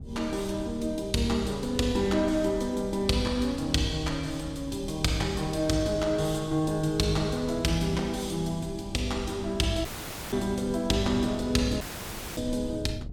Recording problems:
wind on the microphone; below 150 Hz, SNR 14 dB
audio cutting out; at 10 s and at 12 s for 0.5 s

